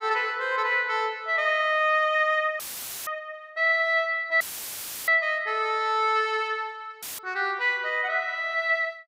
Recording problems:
audio cutting out; at 2.5 s, at 4.5 s for 0.5 s and at 7 s; filled with static

